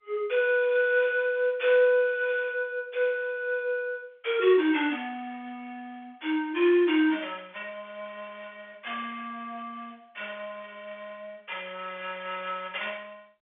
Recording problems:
telephone audio; 260 Hz to 3.6 kHz, G.711

